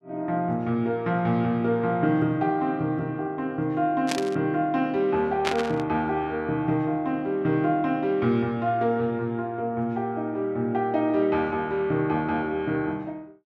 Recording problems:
burst of static; at 4 s and at 5.5 s; peak +3 dB vs average level

